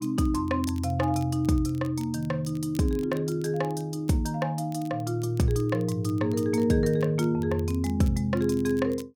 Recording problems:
crackle; vinyl, SNR 25 dB

